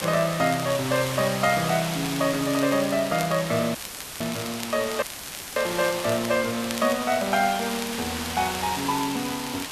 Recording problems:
hiss; SNR 7 dB
crackle; vinyl, SNR 15 dB
dropout; at 4 s and at 5 s for 0.5 s; filled with static

